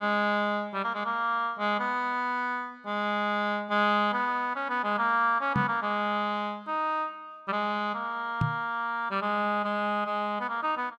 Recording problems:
microphone bump; at 5.5 s and at 8.5 s; peak +4 dB vs average level

